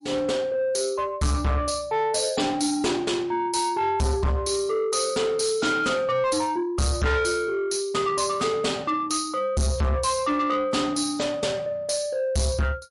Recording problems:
codec artefacts; MP3, log-spectral distance 4 dB, nothing above 11 kHz
distorted audio; soft clipping, signal-to-distortion ratio 6 dB

